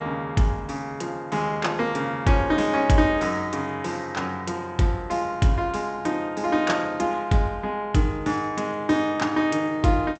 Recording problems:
lossy compression; G.722, log-spectral distance 3 dB, nothing above 7.8 kHz

